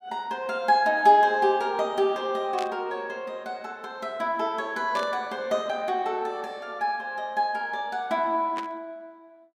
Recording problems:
static burst; at 2.5 s, at 5 s and at 8.5 s; peak -7 dB vs average level

